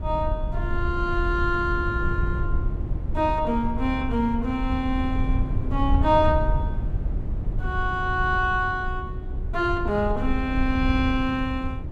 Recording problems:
low-frequency rumble; below 92 Hz, SNR 3 dB

